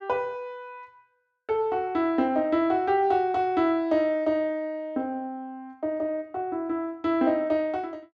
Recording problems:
none

